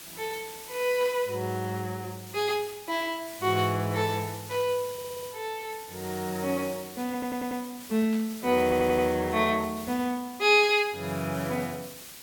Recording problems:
background hiss; slope 0 dB per octave, SNR 15 dB
static burst; 4 times, first at 1 s; peak -14 dB vs average level
stutter; at 5 s, at 7 s and at 8.5 s

